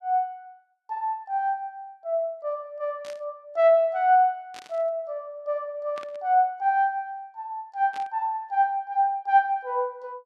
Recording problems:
burst of static; 4 times, first at 3 s; peak -13 dB vs average level

